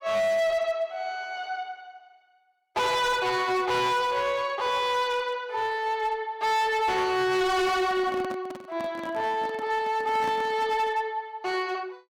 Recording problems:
distortion; hard clipping, signal-to-distortion ratio 8 dB
microphone handling noise; from 7.5 to 11 s; peak -7 dB vs average level

